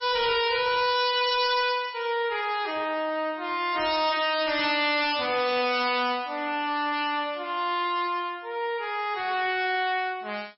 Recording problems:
codec artefacts; MP3, log-spectral distance 4 dB, nothing above 5.5 kHz
distortion; hard clipping, signal-to-distortion ratio 9 dB

